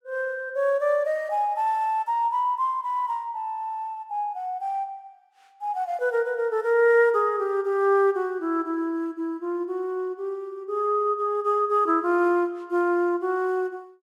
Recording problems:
none

